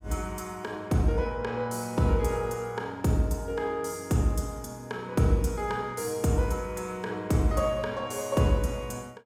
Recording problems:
none

